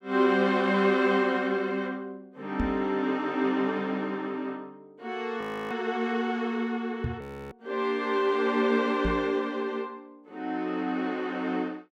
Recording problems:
microphone thump; at 2.5 s, at 7 s and at 9 s; peak +1 dB vs average level
audio freezing; at 5.5 s and at 7 s

